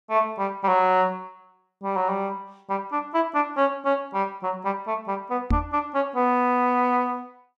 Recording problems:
microphone thump; at 5.5 s; peak +4 dB vs average level

